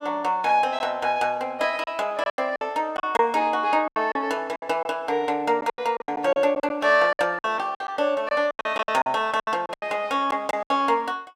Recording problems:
packet loss; 12% of the sound replaced, filled with silence

